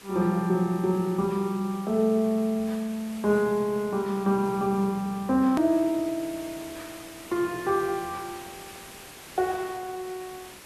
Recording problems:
hiss; slope -2 dB per octave, SNR 18 dB
hard cut with a click; at 5.5 s

